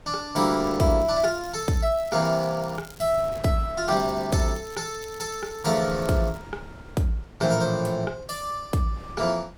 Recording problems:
wind on the microphone; below 470 Hz, SNR 19 dB
crackling; from 0.5 to 3.5 s and from 4 to 6.5 s; loose cable, SNR 24 dB

